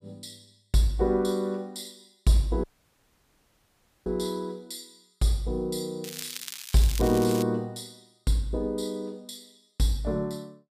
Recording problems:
dropout; at 2.5 s for 1.5 s
crackle; from 6 to 7.5 s; loose cable, SNR 9 dB

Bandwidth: 15 kHz